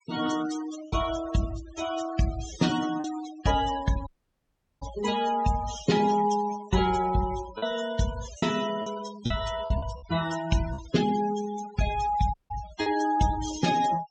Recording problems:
treble missing; nothing above 8 kHz
denoising artefacts; signal-to-artefact ratio 12 dB
packet loss; 3% of the sound replaced, filled with repeated pitch periods
audio cutting out; at 4 s for 0.5 s and at 12 s

